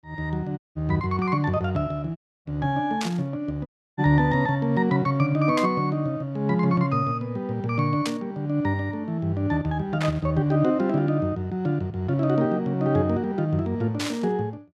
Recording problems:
dropout; at 0.5 s, at 2 s and at 3.5 s
burst of static; 5 times, first at 3 s; peak -1 dB vs average level

